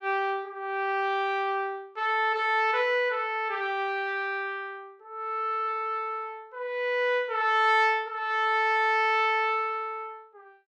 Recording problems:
none

